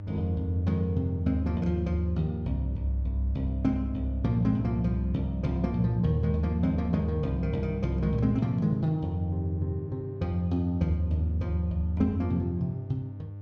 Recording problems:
hum; 50 Hz, harmonics up to 600 Hz, SNR 12 dB

